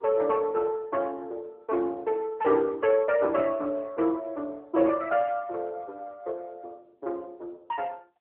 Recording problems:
phone line; 300 Hz to 3.1 kHz, AMR-NB

